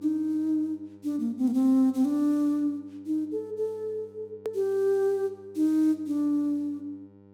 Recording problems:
hum; 50 Hz, harmonics up to 1 kHz, SNR 26 dB
click at an edit; at 4.5 s

